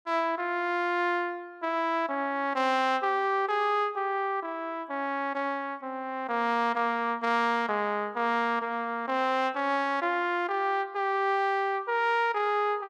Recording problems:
none

